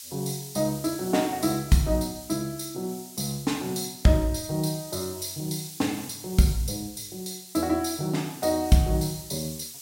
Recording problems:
background hiss; slope +6 dB per octave, SNR 14 dB

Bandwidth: 16 kHz